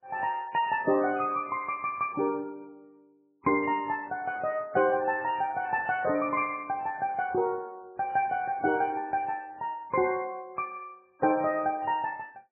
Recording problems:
lossy compression; MP3, log-spectral distance 2 dB

